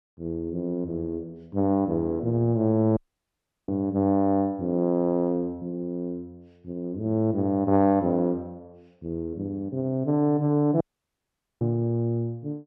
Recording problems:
dropout; at 3 s for 0.5 s and at 11 s for 1 s

